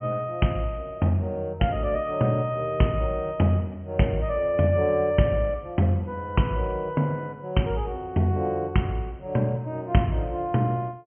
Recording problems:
low-pass filter; nothing above 3.2 kHz

